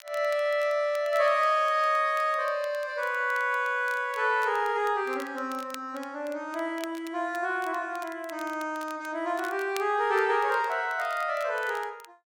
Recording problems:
crackling; vinyl, SNR 22 dB

